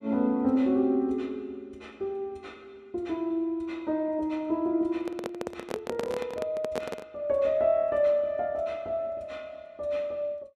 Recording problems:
handling noise; from 5 to 7 s; peak 0 dB vs average level

